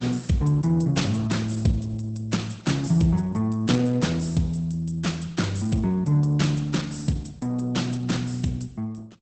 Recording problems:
codec artefacts; Opus, log-spectral distance 4 dB, nothing above 8.2 kHz

